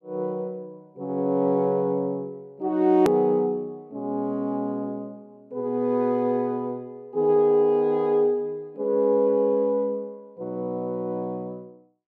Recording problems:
hard cut with a click; at 3 s

